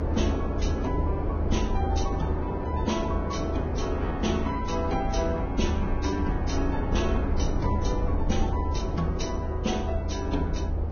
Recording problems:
lossy codec; Vorbis, log-spectral distance 3 dB, nothing above 6.5 kHz
rumble; below 78 Hz, SNR 0 dB
wind on the microphone; below 580 Hz, SNR 3 dB

